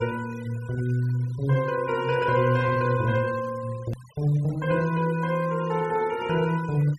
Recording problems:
noise reduction artefacts; signal-to-artefact ratio 21 dB
hard cut with a click; at 4 s

